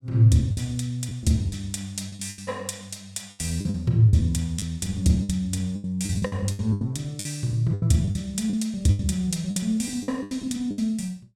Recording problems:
packet loss; 13% of the sound replaced, filled with the last packet

